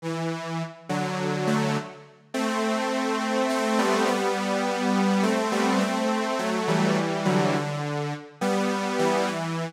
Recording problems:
none

